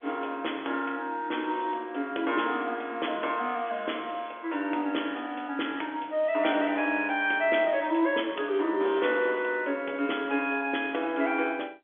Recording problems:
telephone audio; 260 Hz to 3.5 kHz, G.711

